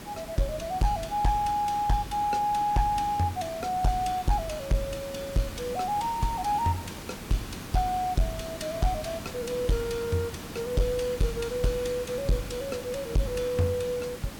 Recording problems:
distorted audio; hard clipping, signal-to-distortion ratio 11 dB
background hiss; slope -4 dB per octave, SNR 11 dB

